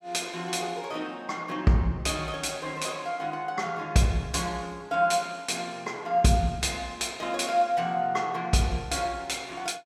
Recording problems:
none

